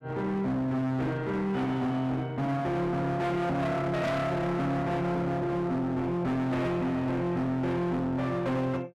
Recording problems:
distortion; hard clipping, uneven, signal-to-distortion ratio 7 dB

